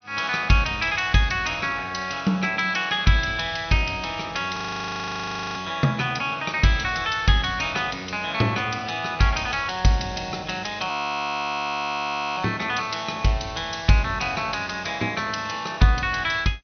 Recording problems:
treble missing; nothing above 6.1 kHz
frozen audio; at 4.5 s for 1 s and at 11 s for 1.5 s

